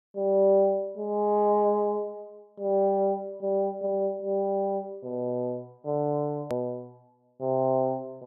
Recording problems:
click at an edit; at 6.5 s

